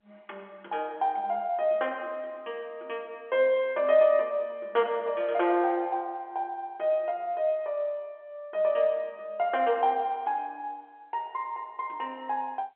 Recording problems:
phone line; 300 Hz to 3.3 kHz, G.711

